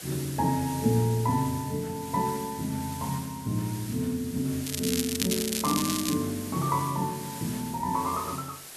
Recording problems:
background hiss; slope -1 dB per octave, SNR 11 dB
crackling; from 4.5 to 6 s; loose cable, SNR 2 dB

